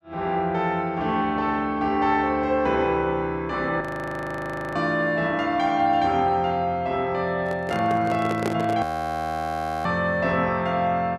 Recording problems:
frozen audio; at 4 s for 1 s and at 9 s for 1 s
microphone handling noise; from 7.5 to 9 s; peak +1 dB vs average level

